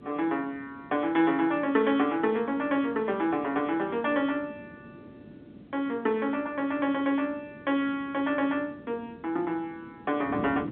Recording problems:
phone line; 220 Hz to 3.9 kHz, G.711
wind noise; below 350 Hz, SNR 18 dB

